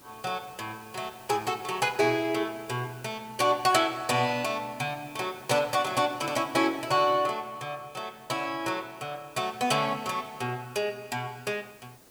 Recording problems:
background hiss; SNR 23 dB

